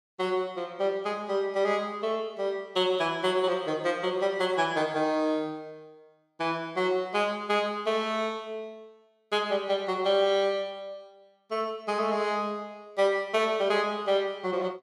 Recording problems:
none

